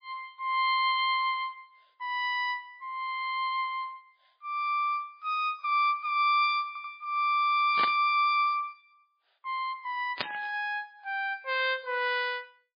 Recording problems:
lossy codec; MP3, log-spectral distance 2 dB, nothing above 4.2 kHz
stutter; at 6.5 s
static burst; at 8 s and at 10 s; peak +2 dB vs average level

